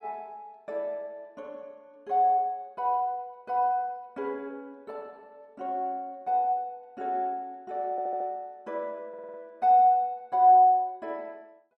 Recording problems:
audio stuttering; at 8 s and at 9 s

